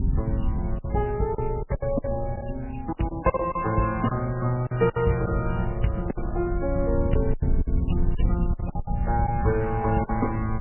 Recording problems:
codec artefacts; MP3, log-spectral distance 2 dB, nothing above 2.8 kHz
wind noise; below 84 Hz, SNR 4 dB
lost packets; 10% of the sound replaced, filled with silence

